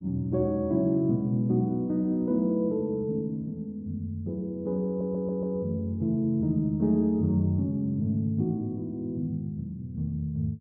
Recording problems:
stutter; at 5 s

